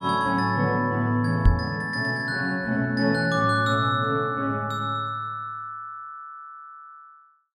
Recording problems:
microphone thump; at 1.5 s; peak +8 dB vs average level

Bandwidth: 15 kHz